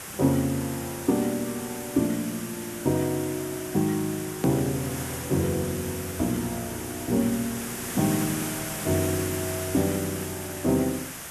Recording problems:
hiss; SNR 7 dB
click at an edit; at 4.5 s

